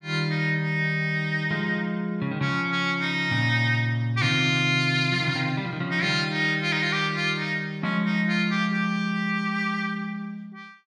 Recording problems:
none

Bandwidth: 12.5 kHz